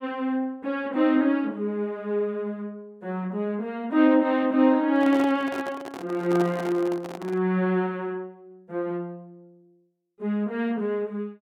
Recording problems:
microphone handling noise; from 5 to 7.5 s; peak -4 dB vs average level

